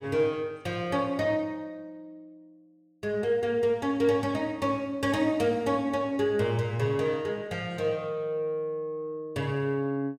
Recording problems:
none

